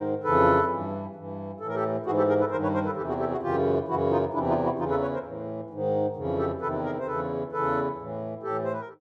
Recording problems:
none

